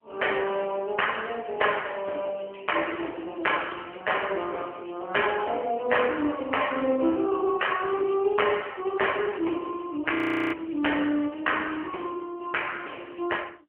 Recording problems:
telephone audio; 260 Hz to 3.1 kHz, AMR-NB
audio freezing; at 10 s

